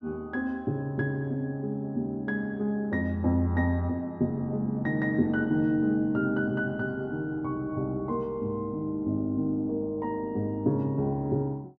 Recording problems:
none

